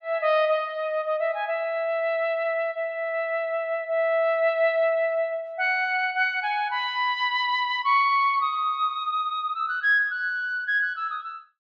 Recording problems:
none

